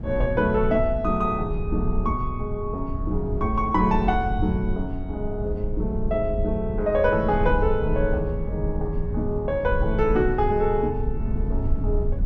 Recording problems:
low-frequency rumble; below 82 Hz, SNR 5 dB

